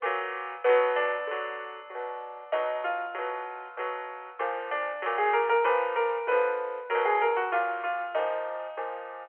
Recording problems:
telephone audio; 370 Hz to 3.2 kHz, G.711

